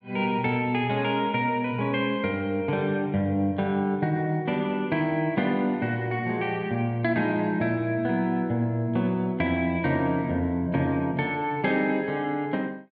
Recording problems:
none

